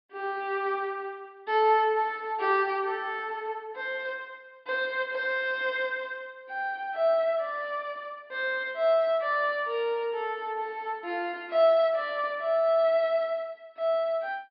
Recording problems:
low-pass filter; nothing above 5.5 kHz

